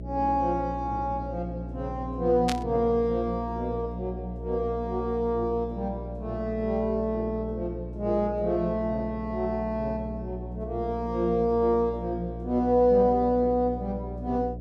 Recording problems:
hum; 60 Hz, harmonics up to 660 Hz, SNR 10 dB
static burst; at 2.5 s; peak +1 dB vs average level

